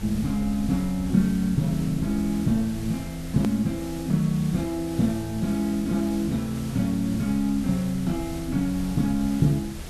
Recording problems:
background hiss; SNR 15 dB
rumble; below 84 Hz, SNR 15 dB
click at an edit; at 3.5 s

